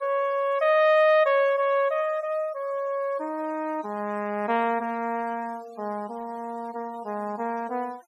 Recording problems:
noise reduction artefacts; signal-to-artefact ratio 26 dB

